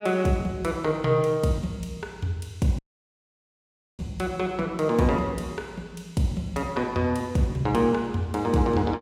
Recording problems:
audio cutting out; at 3 s for 1 s

